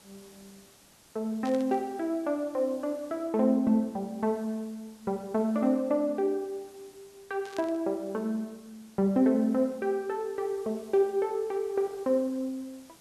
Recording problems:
background hiss; slope -2 dB per octave, SNR 26 dB
burst of static; at 1.5 s and at 7.5 s; peak -11 dB vs average level

